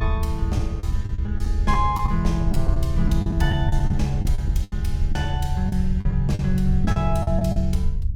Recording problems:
low-frequency rumble; below 76 Hz, SNR 0 dB
packet loss; 11% of the sound replaced, filled with the last packet

